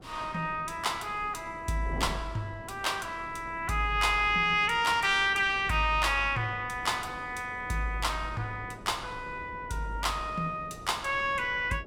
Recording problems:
wind noise; below 440 Hz, SNR 18 dB

